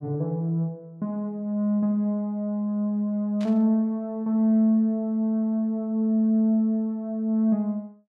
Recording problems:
static burst; at 3.5 s; peak -15 dB vs average level

